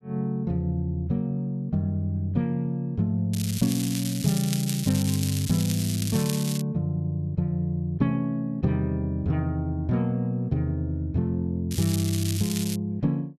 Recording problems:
crackling; from 3.5 to 6.5 s and from 12 to 13 s; loose cable, SNR 7 dB

